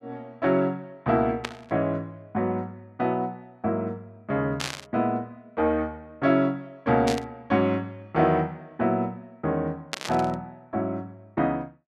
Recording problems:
static burst; 4 times, first at 1.5 s; peak +1 dB vs average level

